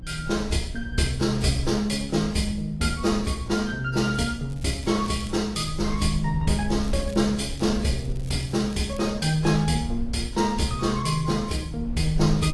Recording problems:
lossy compression; AAC, log-spectral distance 3 dB, nothing above 11.3 kHz
hum; 60 Hz, harmonics up to 360 Hz, SNR 17 dB
rumble; below 62 Hz, SNR 13 dB
crackling; at 4.5 s and from 7 to 9 s; loose cable, SNR 23 dB

